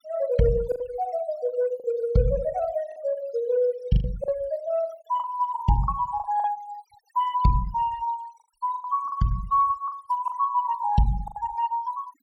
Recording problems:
denoising artefacts; signal-to-artefact ratio 21 dB
lost packets; 7% of the sound replaced, filled with the last packet

